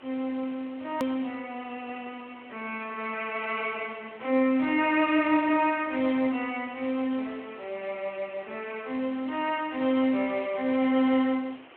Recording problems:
telephone audio; 220 Hz to 3.3 kHz, Speex
hiss; SNR 22 dB
edit click; at 1 s

